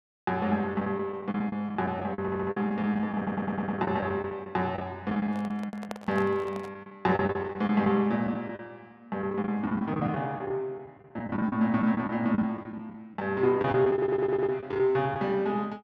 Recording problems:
lost packets; 11% of the sound replaced, filled with the last packet
audio stuttering; at 2 s, at 3 s and at 14 s
handling noise; from 5.5 to 6.5 s; peak -4 dB vs average level

